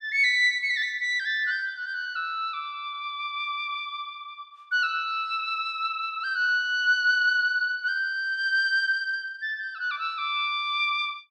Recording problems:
none

